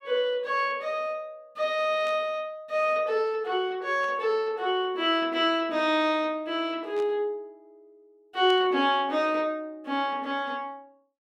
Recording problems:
static burst; 4 times, first at 2 s; peak -14 dB vs average level

